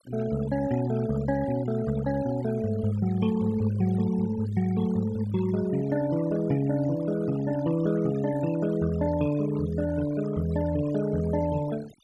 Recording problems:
denoising artefacts; signal-to-artefact ratio 16 dB

